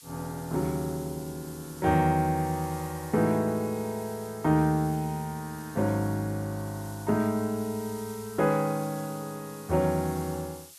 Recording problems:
hiss; slope +4 dB per octave, SNR 17 dB

